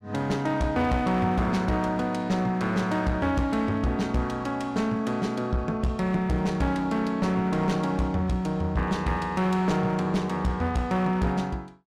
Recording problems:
distortion; hard clipping, uneven, signal-to-distortion ratio 10 dB

